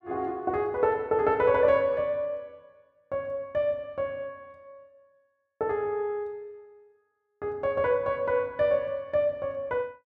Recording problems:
none

